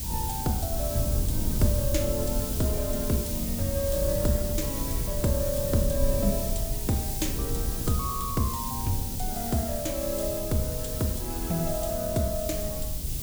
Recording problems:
background hiss; SNR 3 dB
low-frequency rumble; below 110 Hz, SNR 3 dB

